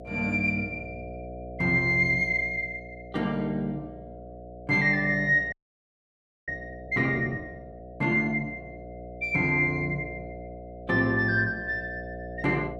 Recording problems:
mains hum; 60 Hz, harmonics up to 720 Hz, SNR 15 dB
frozen audio; at 5.5 s for 1 s

